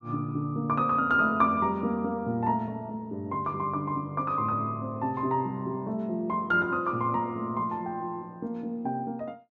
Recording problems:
none

